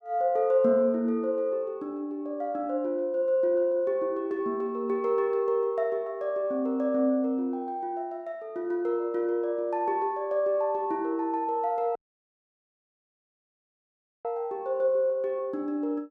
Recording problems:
dropout; at 12 s for 2.5 s

